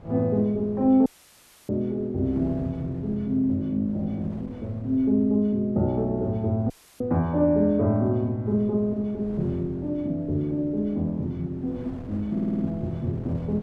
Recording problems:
wind on the microphone; below 380 Hz, SNR 20 dB
audio cutting out; at 1 s for 0.5 s and at 6.5 s
audio stuttering; at 12 s

